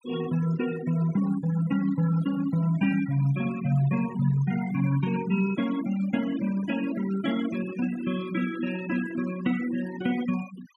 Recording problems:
denoising artefacts; signal-to-artefact ratio 15 dB

